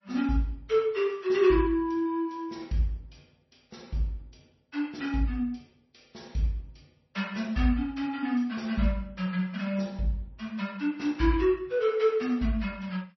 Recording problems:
lossy compression; MP3, log-spectral distance 3 dB, nothing above 5.8 kHz

